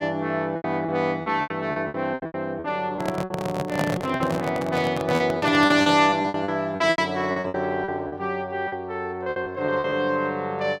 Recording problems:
packet loss; 14% of the sound replaced, filled with repeated pitch periods
handling noise; from 3 to 6 s; peak +3 dB vs average level

